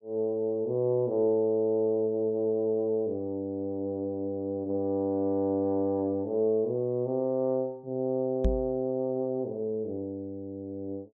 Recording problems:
knock on the microphone; at 8.5 s; peak +5 dB vs average level

